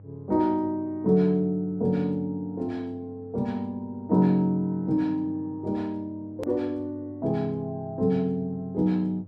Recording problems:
electrical hum; 50 Hz, harmonics up to 600 Hz, SNR 20 dB
click at an edit; at 6.5 s

